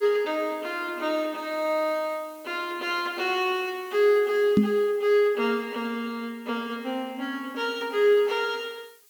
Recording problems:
hiss; slope +3 dB per octave, SNR 26 dB
microphone bump; at 4.5 s; peak +9 dB vs average level

